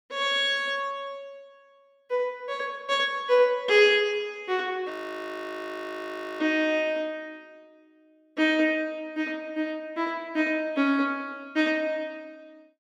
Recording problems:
frozen audio; at 5 s for 1.5 s

